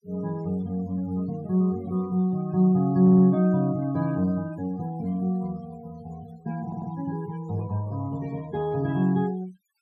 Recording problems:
noise reduction artefacts; signal-to-artefact ratio 24 dB
audio stuttering; at 3 s and at 6.5 s

